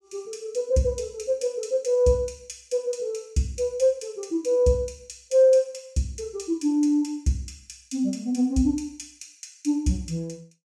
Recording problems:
none

